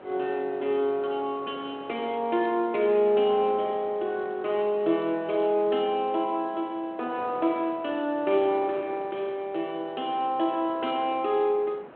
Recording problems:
telephone audio; 280 Hz to 3.3 kHz, G.726
wind on the microphone; below 1 kHz, SNR 19 dB

